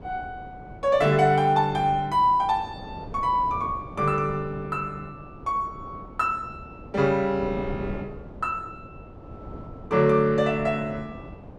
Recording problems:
wind noise; below 460 Hz, SNR 16 dB

